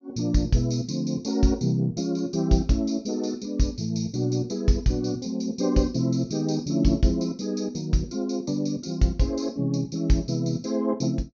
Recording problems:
low-pass filter; nothing above 7.3 kHz

